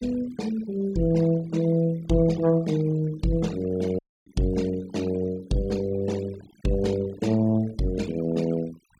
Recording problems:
noise reduction artefacts; signal-to-artefact ratio 20 dB
dropout; at 4 s

